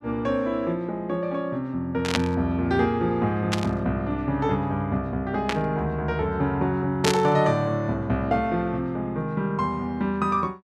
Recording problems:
burst of static; 4 times, first at 2 s; peak +5 dB vs average level

